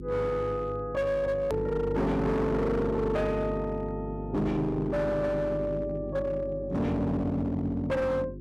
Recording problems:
distorted audio; hard clipping, uneven, signal-to-distortion ratio 7 dB
electrical hum; 50 Hz, harmonics up to 400 Hz, SNR 9 dB
edit click; at 1.5 s

